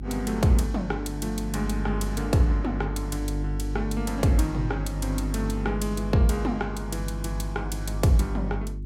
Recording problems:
hum; 50 Hz, harmonics up to 400 Hz, SNR 5 dB

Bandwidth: 16 kHz